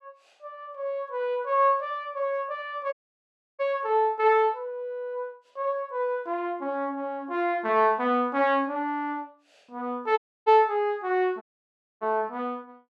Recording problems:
dropout; at 3 s for 0.5 s, at 10 s and at 11 s for 0.5 s

